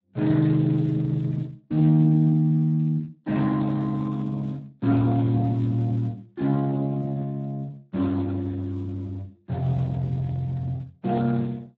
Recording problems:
codec artefacts; Speex, log-spectral distance 2 dB

